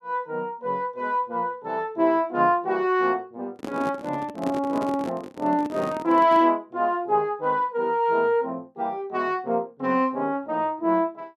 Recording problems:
microphone handling noise; from 3.5 to 6.5 s; peak -3 dB vs average level

